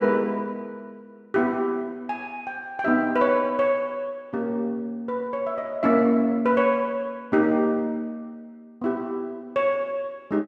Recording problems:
none

